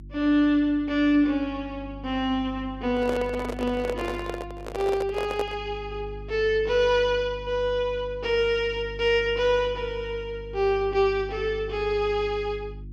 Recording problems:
hum; 50 Hz, harmonics up to 350 Hz, SNR 16 dB
microphone handling noise; from 3 to 5.5 s; peak -1 dB vs average level

